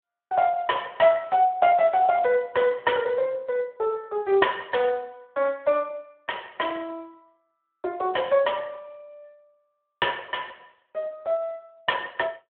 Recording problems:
telephone audio; 340 Hz to 3.4 kHz, Speex

